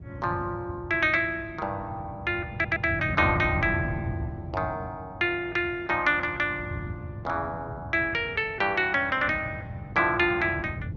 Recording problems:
lossy codec; Opus, log-spectral distance 2 dB
wind noise; below 170 Hz, SNR 11 dB
stutter; at 2.5 s

